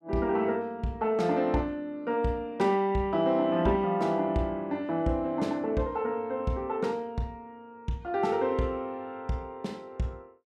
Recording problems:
none

